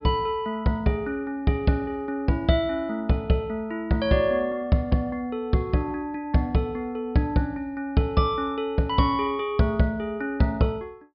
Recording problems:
treble missing; nothing above 5.5 kHz

